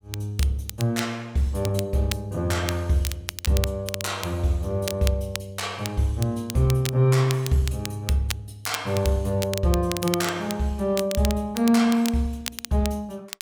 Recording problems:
crackling; vinyl, SNR 10 dB

